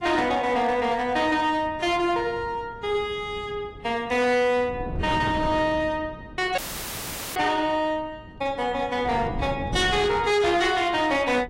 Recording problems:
codec artefacts; AAC, log-spectral distance 2 dB, nothing above 11.6 kHz
distortion; hard clipping, signal-to-distortion ratio 12 dB
wind noise; below 310 Hz, SNR 13 dB
dropout; at 6.5 s for 1 s; filled with static

